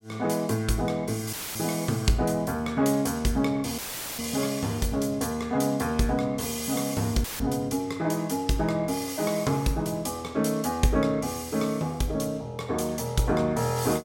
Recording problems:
dropout; at 1.5 s, at 4 s and at 7 s; filled with static

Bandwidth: 16.5 kHz